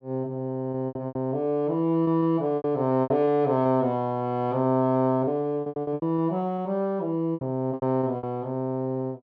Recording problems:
packet loss; 11% of the sound replaced, filled with repeated pitch periods

